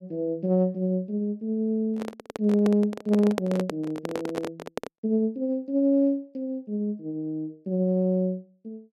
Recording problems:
microphone handling noise; from 2 to 5 s; peak +2 dB vs average level

